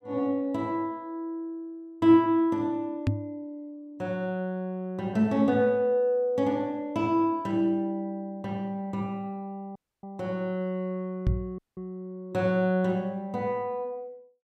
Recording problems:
microphone bump; at 3 s and at 11 s; peak +6 dB vs average level
audio cutting out; at 10 s and at 12 s

